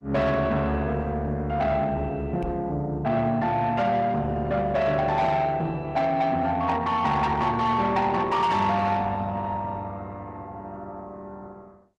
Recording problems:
lossy compression; Opus, log-spectral distance 2 dB, nothing above 11 kHz
distorted audio; soft clipping, signal-to-distortion ratio 11 dB
microphone bump; at 2.5 s; peak -5 dB vs average level

